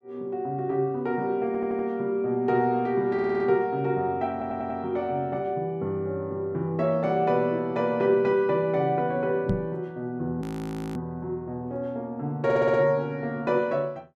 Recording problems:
stutter; 4 times, first at 1.5 s
microphone bump; at 9.5 s; peak +4 dB vs average level
audio freezing; at 10 s for 0.5 s

